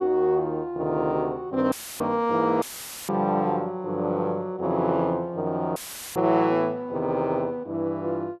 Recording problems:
dropout; at 1.5 s, at 2.5 s and at 6 s; filled with static

